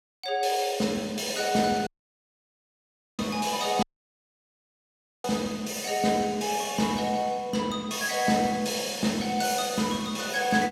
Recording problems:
audio cutting out; at 2 s for 1.5 s and at 4 s for 1.5 s

